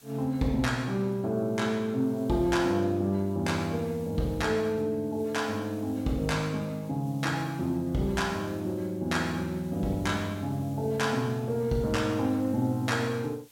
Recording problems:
hiss; slope 0 dB per octave, SNR 26 dB

